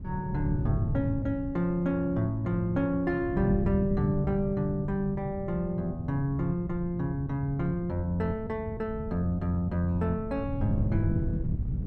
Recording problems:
wind on the microphone; below 160 Hz, SNR 5 dB

